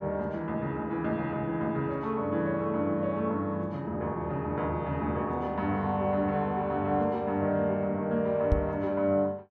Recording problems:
knock on the microphone; at 8.5 s; peak +6 dB vs average level

